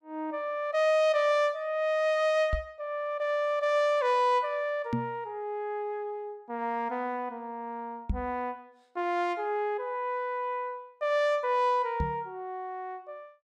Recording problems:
microphone bump; 4 times, first at 2.5 s; peak +3 dB vs average level

